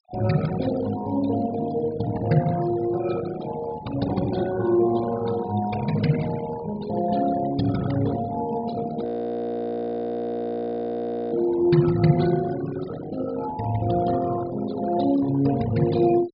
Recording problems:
treble cut off; nothing above 5.5 kHz
denoising artefacts; signal-to-artefact ratio 14 dB
frozen audio; at 9 s for 2.5 s

